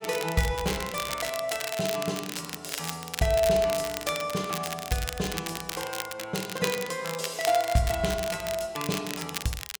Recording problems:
crackling; vinyl, SNR 6 dB

